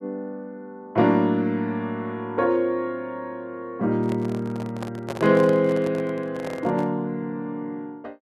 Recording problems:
handling noise; from 4 to 7 s; peak -4 dB vs average level

